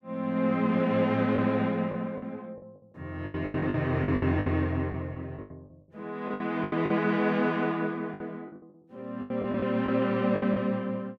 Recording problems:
lost packets; 12% of the sound replaced, filled with the last packet

